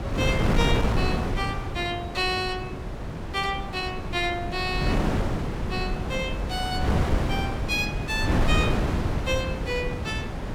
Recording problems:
wind noise; below 390 Hz, SNR -1 dB

